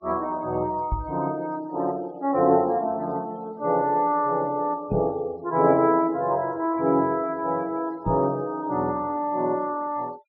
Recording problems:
treble cut off; nothing above 5.9 kHz
noise reduction artefacts; signal-to-artefact ratio 27 dB
microphone thump; at 1 s, at 5 s and at 8 s; peak +1 dB vs average level

